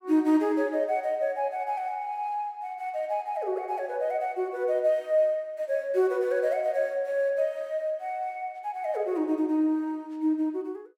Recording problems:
none

